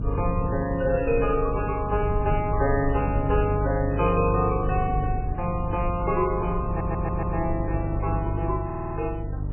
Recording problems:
codec artefacts; MP3, log-spectral distance 2 dB, nothing above 2.7 kHz
electrical hum; 50 Hz, harmonics up to 450 Hz, SNR 4 dB
low-frequency rumble; below 100 Hz, SNR 7 dB
wind on the microphone; below 680 Hz, SNR 20 dB
audio stuttering; at 6.5 s and at 8.5 s

